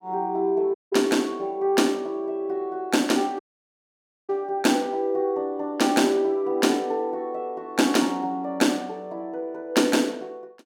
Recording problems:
dropout; at 0.5 s and at 3.5 s for 1 s

